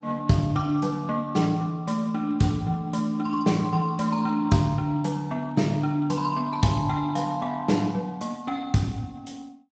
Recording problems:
lossy codec; Speex, log-spectral distance 3 dB, nothing above 7.6 kHz

